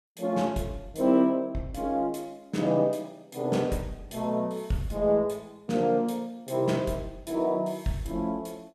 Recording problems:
none

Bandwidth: 14.5 kHz